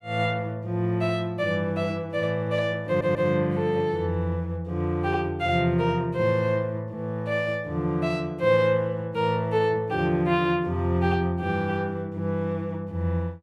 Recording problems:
stutter; at 3 s

